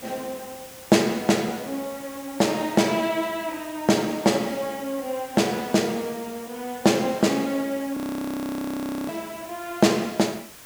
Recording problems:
background hiss; slope -2 dB per octave, SNR 17 dB
frozen audio; at 8 s for 1 s

